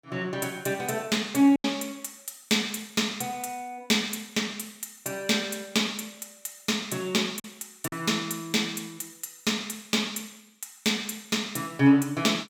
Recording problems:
packet loss; 1.4% of the sound replaced, filled with silence

